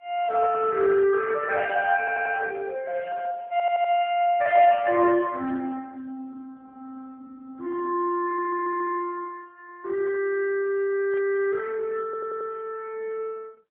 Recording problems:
phone line; 280 Hz to 3.5 kHz, AMR-NB
stutter; 4 times, first at 2 s
burst of static; at 5.5 s and at 11 s; peak -17 dB vs average level

